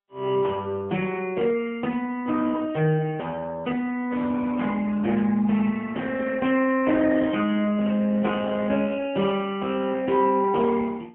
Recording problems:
phone line; 170 Hz to 2.9 kHz, AMR-NB, then MP3

